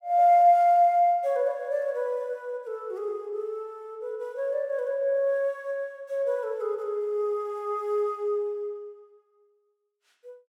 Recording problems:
none

